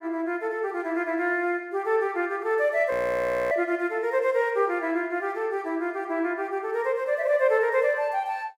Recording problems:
frozen audio; at 3 s for 0.5 s

